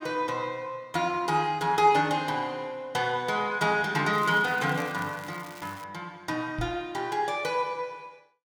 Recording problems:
crackling; from 4 to 6 s; loose cable, SNR 20 dB
microphone bump; at 6.5 s; peak -3 dB vs average level

